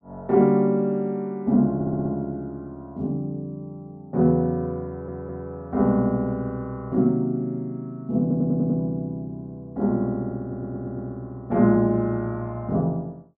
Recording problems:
stutter; 4 times, first at 2 s

